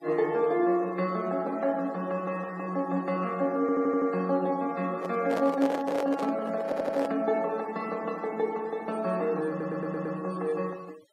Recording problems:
denoising artefacts; signal-to-artefact ratio 24 dB
audio stuttering; at 3.5 s, at 6.5 s and at 9.5 s
microphone handling noise; from 5 to 7 s; peak +1 dB vs average level

